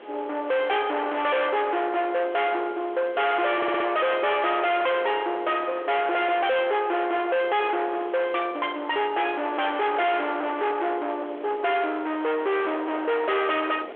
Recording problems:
telephone audio; 320 Hz to 3.5 kHz, G.726
distortion; hard clipping, signal-to-distortion ratio 6 dB
hiss; SNR 27 dB
wind noise; below 1.7 kHz, SNR 15 dB
stutter; at 3.5 s

